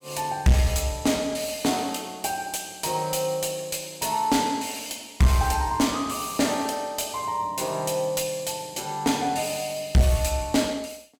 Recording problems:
distorted audio; soft clipping, signal-to-distortion ratio 11 dB

